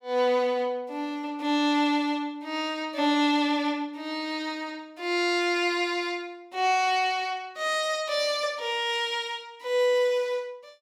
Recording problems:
none

